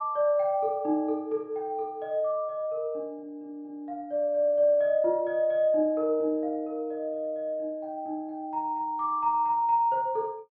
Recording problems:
treble cut off; nothing above 5.5 kHz

